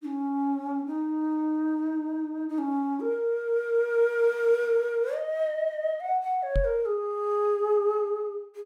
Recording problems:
knock on the microphone; at 6.5 s; peak +2 dB vs average level

